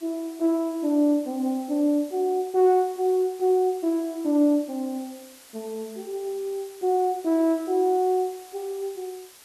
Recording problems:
background hiss; slope +1 dB per octave, SNR 23 dB

